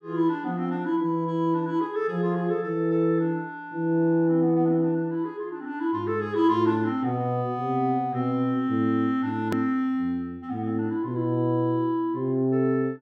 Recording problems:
hard cut with a click; at 9.5 s

